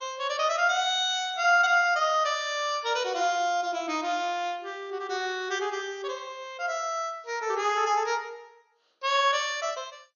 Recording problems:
lossy compression; MP2, log-spectral distance 5 dB, nothing above 6.7 kHz

